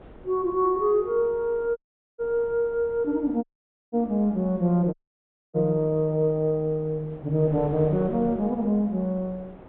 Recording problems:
low-pass filter; nothing above 4 kHz
wind noise; below 580 Hz, SNR 20 dB
dropout; at 2 s, at 3.5 s and at 5 s for 0.5 s

